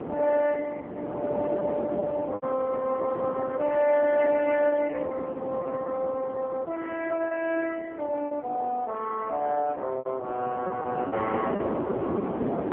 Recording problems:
phone line; 260 Hz to 3.2 kHz, AMR-NB
wind noise; below 600 Hz, SNR 6 dB
lost packets; 7% of the sound replaced, filled with repeated pitch periods

